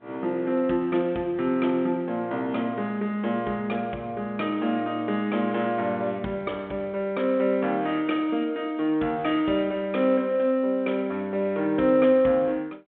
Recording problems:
telephone audio; 170 Hz to 3.6 kHz, G.726

